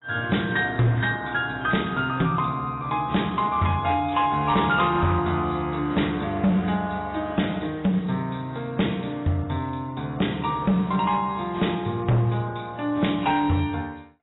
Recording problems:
codec artefacts; AAC, log-spectral distance 7 dB, nothing above 3.8 kHz
distorted audio; hard clipping, signal-to-distortion ratio 11 dB

